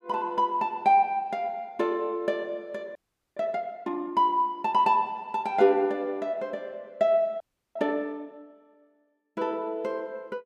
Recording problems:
audio freezing; at 3 s and at 7.5 s

